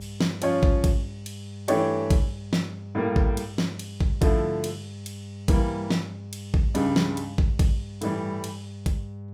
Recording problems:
hum; 50 Hz, harmonics up to 800 Hz, SNR 14 dB

